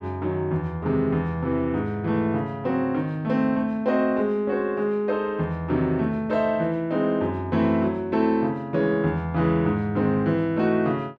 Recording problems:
none

